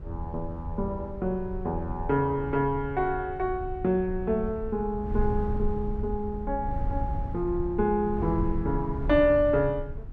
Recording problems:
wind on the microphone; below 92 Hz, SNR 8 dB

